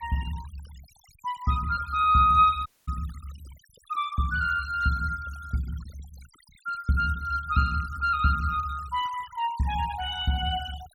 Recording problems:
denoising artefacts; signal-to-artefact ratio 22 dB
audio cutting out; at 2.5 s

